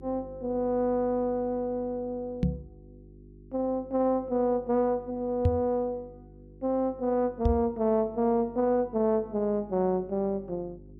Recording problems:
hum; 50 Hz, harmonics up to 400 Hz, SNR 22 dB
microphone bump; at 2.5 s, at 5.5 s and at 7.5 s; peak +7 dB vs average level

